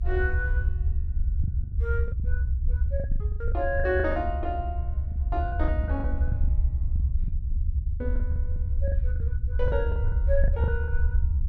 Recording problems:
low-frequency rumble; below 74 Hz, SNR -5 dB
lost packets; 14% of the sound replaced, filled with the last packet

